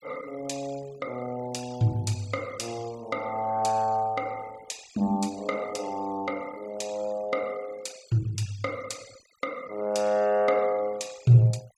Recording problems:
noise reduction artefacts; signal-to-artefact ratio 23 dB

